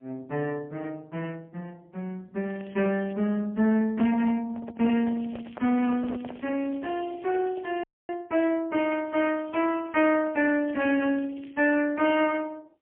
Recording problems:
phone line; 150 Hz to 3.1 kHz, AMR-NB, then MP3
distorted audio; soft clipping, signal-to-distortion ratio 12 dB
crackling; at 2.5 s, from 5 to 8 s and from 9 to 12 s; loose cable, SNR 27 dB
handling noise; from 4 to 6.5 s; peak -7 dB vs average level
audio cutting out; at 8 s

